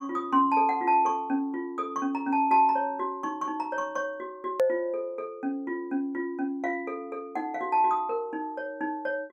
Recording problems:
edit click; at 4.5 s

